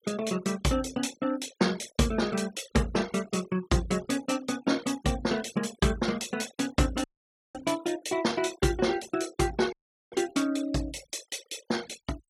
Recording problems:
denoising artefacts; signal-to-artefact ratio 17 dB
dropout; at 7 s for 0.5 s and at 9.5 s

